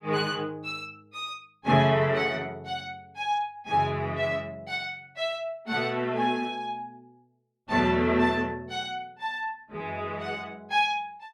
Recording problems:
none

